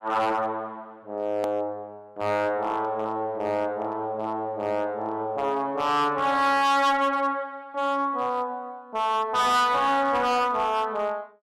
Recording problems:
distortion; hard clipping, signal-to-distortion ratio 8 dB
edit click; at 1.5 s

